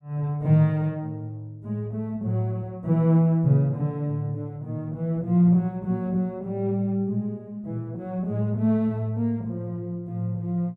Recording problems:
none

